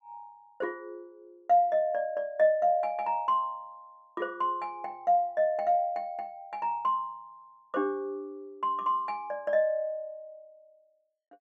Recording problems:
none

